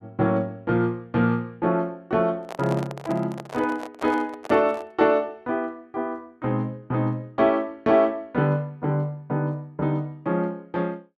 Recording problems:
handling noise; from 2.5 to 5 s; peak -5 dB vs average level

